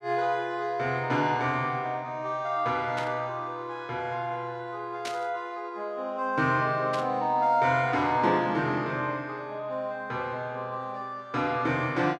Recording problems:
burst of static; at 3 s, at 5 s and at 7 s; peak -3 dB vs average level

